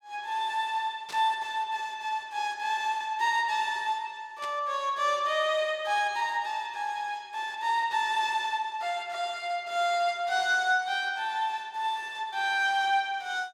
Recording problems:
static burst; at 1 s and at 4.5 s; peak -9 dB vs average level

